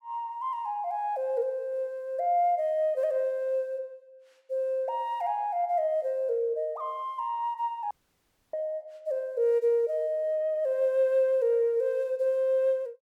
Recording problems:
dropout; at 8 s for 0.5 s

